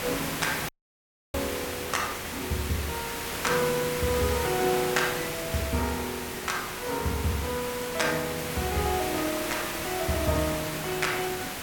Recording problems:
background hiss; slope -2 dB per octave, SNR 3 dB
audio cutting out; at 0.5 s for 0.5 s

